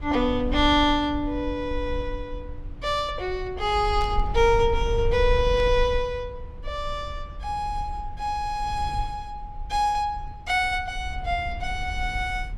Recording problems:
low-frequency rumble; below 62 Hz, SNR 9 dB
static burst; at 4 s and at 5.5 s; peak -12 dB vs average level

